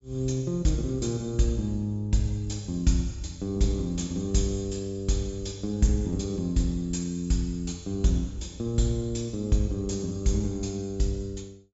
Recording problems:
treble cut off; nothing above 8 kHz

